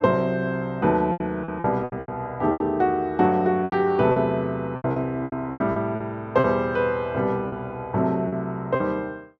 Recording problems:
lost packets; 11% of the sound replaced, filled with repeated pitch periods

